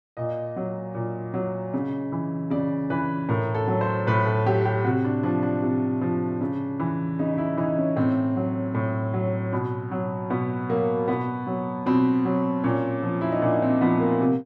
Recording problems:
none

